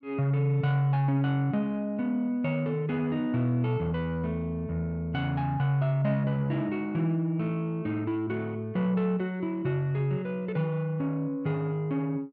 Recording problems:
none

